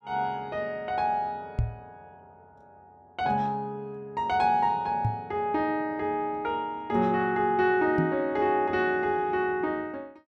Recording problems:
microphone bump; at 1.5 s, at 5 s and at 8 s; peak +4 dB vs average level

